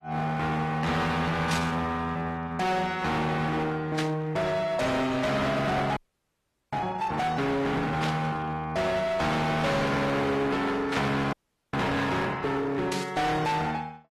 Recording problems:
codec artefacts; AAC, log-spectral distance 3 dB, nothing above 13.1 kHz
distortion; hard clipping, signal-to-distortion ratio 6 dB
static burst; 5 times, first at 1.5 s; peak -1 dB vs average level
frozen audio; at 6 s for 1 s and at 11 s

